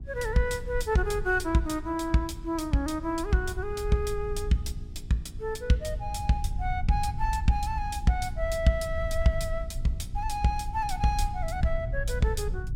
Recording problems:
mains hum; 60 Hz, harmonics up to 780 Hz, SNR 23 dB
low-frequency rumble; below 72 Hz, SNR 7 dB

